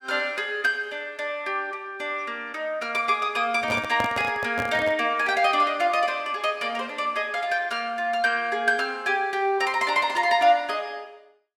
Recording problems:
microphone handling noise; from 3.5 to 5 s; peak -2 dB vs average level

